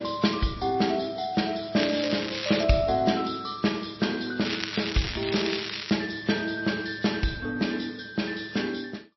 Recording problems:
codec artefacts; MP3, log-spectral distance 9 dB, nothing above 5.7 kHz
crackling; at 2 s and from 4.5 to 6 s; loose cable, SNR 5 dB

